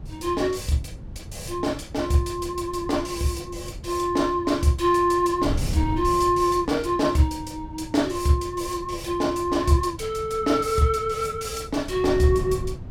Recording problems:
wind on the microphone; below 140 Hz, SNR 13 dB

